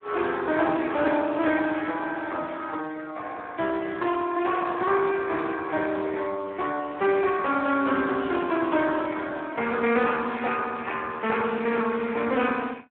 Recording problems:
phone line; 280 Hz to 3.5 kHz, Speex

